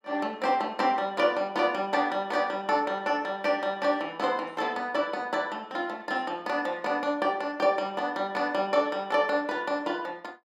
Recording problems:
none

